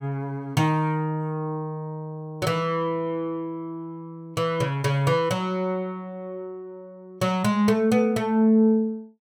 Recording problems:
none

